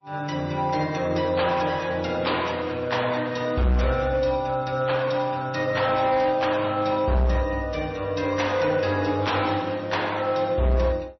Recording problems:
lossy compression; MP3, then MP3, log-spectral distance 3 dB, nothing above 5.8 kHz
distorted audio; hard clipping, signal-to-distortion ratio 10 dB

